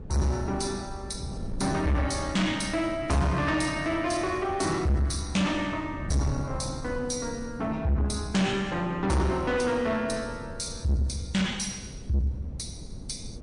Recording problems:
codec artefacts; MP3, log-spectral distance 3 dB
distorted audio; soft clipping, signal-to-distortion ratio 7 dB
wind on the microphone; below 200 Hz, SNR 13 dB

